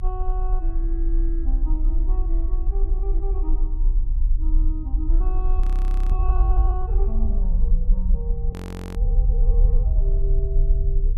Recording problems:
rumble; below 46 Hz, strongest tone 30 Hz, SNR -12 dB
frozen audio; at 5.5 s for 0.5 s and at 8.5 s

